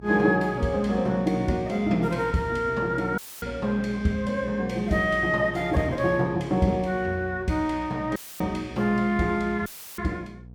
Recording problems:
hum; 60 Hz, harmonics up to 480 Hz, SNR 18 dB
dropout; at 3 s, at 8 s and at 9.5 s; filled with static

